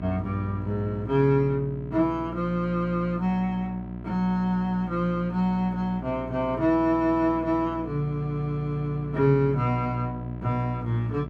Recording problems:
hum; 60 Hz, harmonics up to 1.3 kHz, SNR 12 dB

